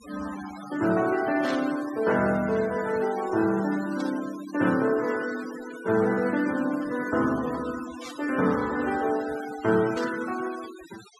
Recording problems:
noise reduction artefacts; signal-to-artefact ratio 14 dB
burst of static; 4 times, first at 1.5 s; peak -8 dB vs average level

